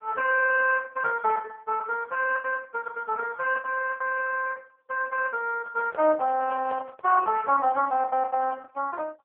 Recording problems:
phone line; 280 Hz to 2.6 kHz, AMR-NB
lost packets; 8% of the sound replaced, filled with the last packet
handling noise; from 5.5 to 7.5 s; peak -11 dB vs average level

